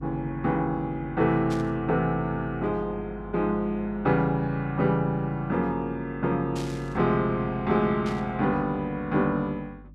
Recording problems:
hum; 50 Hz, harmonics up to 300 Hz, SNR 18 dB
burst of static; at 1.5 s, at 6.5 s and at 8 s; peak -10 dB vs average level

